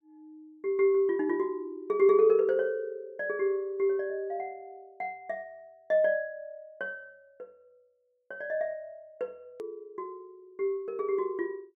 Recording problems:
hard cut with a click; at 9.5 s

